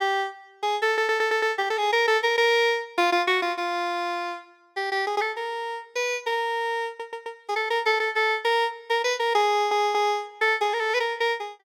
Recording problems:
audio stuttering; at 1 s, at 7 s and at 9.5 s

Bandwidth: 17 kHz